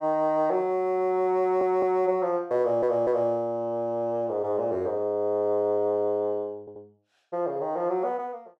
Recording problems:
audio stuttering; at 1.5 s, at 2.5 s and at 6.5 s

